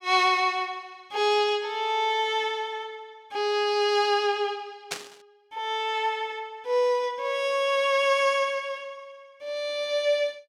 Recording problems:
static burst; at 5 s; peak -1 dB vs average level

